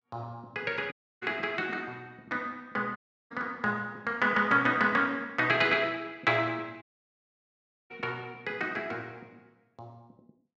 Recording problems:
audio cutting out; at 1 s, at 3 s and at 7 s for 1 s

